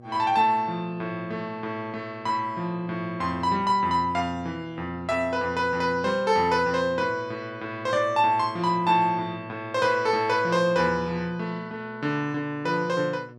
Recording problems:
hum; 60 Hz, harmonics up to 1.1 kHz, SNR 22 dB

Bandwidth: 12 kHz